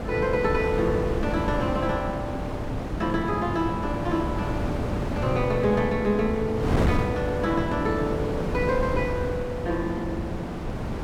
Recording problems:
wind noise; below 470 Hz, SNR 2 dB

